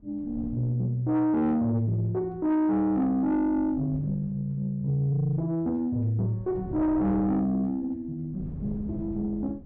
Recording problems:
distortion; soft clipping, signal-to-distortion ratio 10 dB
wind noise; below 210 Hz, SNR 13 dB

